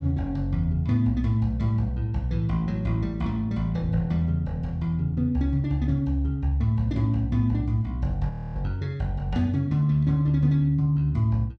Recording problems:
audio freezing; at 8.5 s

